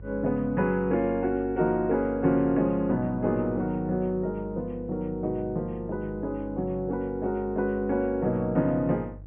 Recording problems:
low-pass filter; nothing above 3.1 kHz
hum; 50 Hz, harmonics up to 500 Hz, SNR 16 dB

